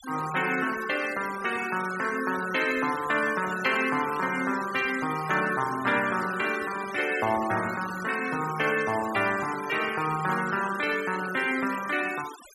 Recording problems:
noise reduction artefacts; signal-to-artefact ratio 13 dB

